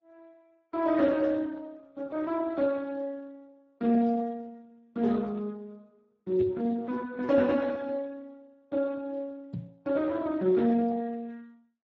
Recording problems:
codec artefacts; AAC, then Speex, log-spectral distance 2 dB
knock on the microphone; at 6.5 s and at 9.5 s; peak -5 dB vs average level

